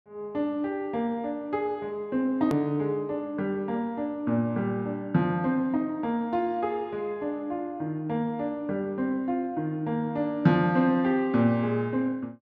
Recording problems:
edit click; at 2.5 s

